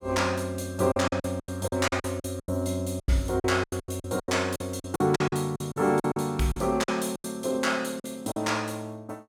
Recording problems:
packet loss; 16% of the sound replaced, filled with silence

